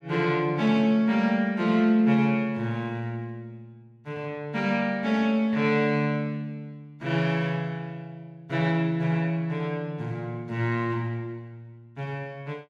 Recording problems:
none

